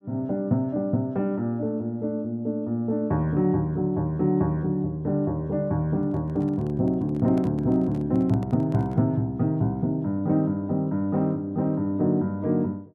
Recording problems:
handling noise; from 6 to 9 s; peak -11 dB vs average level

